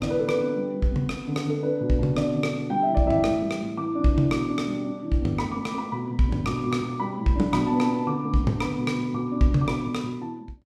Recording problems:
none

